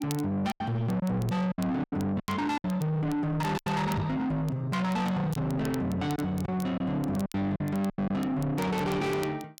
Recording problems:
distorted audio; soft clipping, signal-to-distortion ratio 7 dB
crackle; vinyl, SNR 21 dB
packet loss; 8% of the sound replaced, filled with silence
microphone thump; at 4 s; peak +4 dB vs average level

